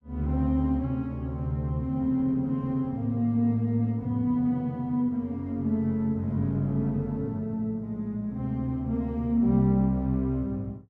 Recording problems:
none

